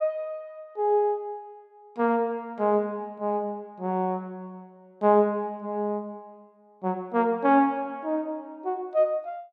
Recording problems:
none

